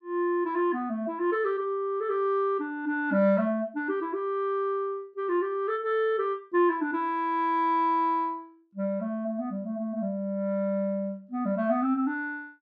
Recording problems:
none

